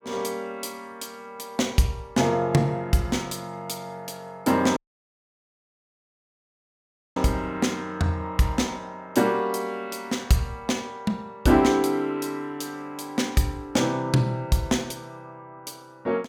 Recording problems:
audio cutting out; at 5 s for 2.5 s

